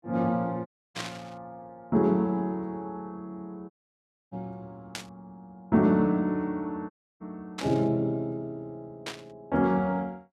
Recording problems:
dropout; at 0.5 s, at 3.5 s for 0.5 s and at 7 s
burst of static; 4 times, first at 1 s; peak -2 dB vs average level

